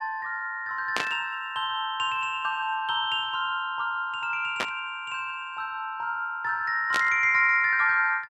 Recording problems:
static burst; at 1 s, at 4.5 s and at 7 s; peak +2 dB vs average level

